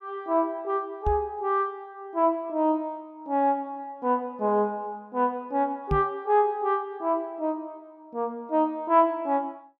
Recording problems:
microphone thump; at 1 s and at 6 s; peak +2 dB vs average level

